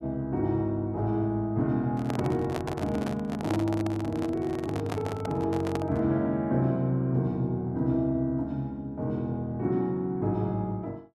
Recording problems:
microphone handling noise; from 2 to 6 s; peak -1 dB vs average level

